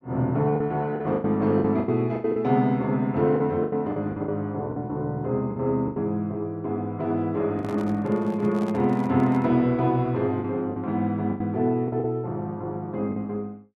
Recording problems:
lost packets; 8% of the sound replaced, filled with the last packet
microphone handling noise; from 7.5 to 9.5 s; peak -10 dB vs average level

